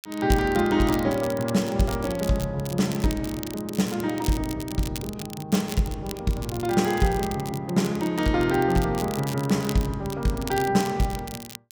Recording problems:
crackle; vinyl, SNR 14 dB

